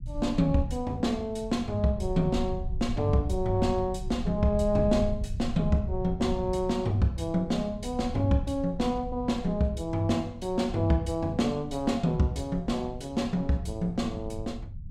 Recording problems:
low-frequency rumble; below 96 Hz, SNR 10 dB

